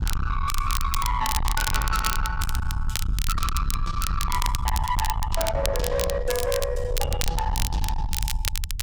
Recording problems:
distortion; soft clipping, signal-to-distortion ratio 7 dB
rumble; below 82 Hz, SNR 2 dB
crackling; vinyl, SNR 5 dB

